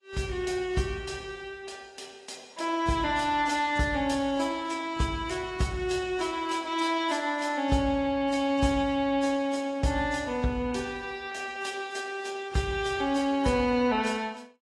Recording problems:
codec artefacts; AAC, log-spectral distance 3 dB, nothing above 11.3 kHz

